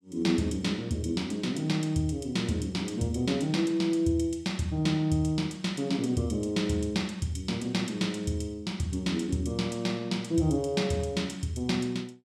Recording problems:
none

